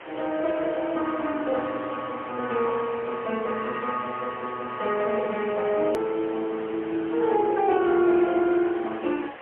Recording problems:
telephone audio; 260 Hz to 3 kHz, AMR-NB, then MP3
background hiss; SNR 16 dB
edit click; at 6 s

